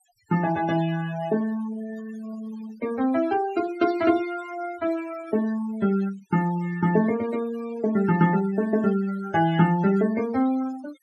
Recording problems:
denoising artefacts; signal-to-artefact ratio 16 dB

